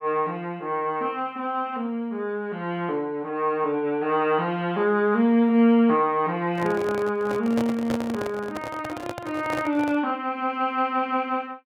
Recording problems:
microphone handling noise; from 6.5 to 10 s; peak -2 dB vs average level

